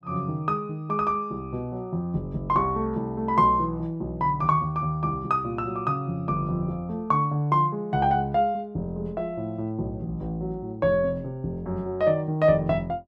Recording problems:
none

